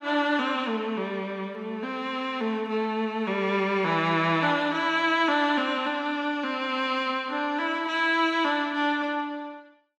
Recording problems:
none

